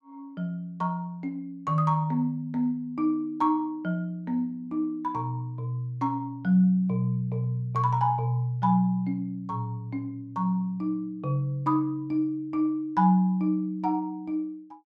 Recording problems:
none

